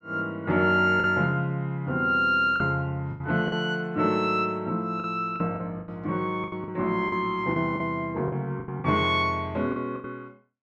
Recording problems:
lost packets; 9% of the sound replaced, filled with the last packet

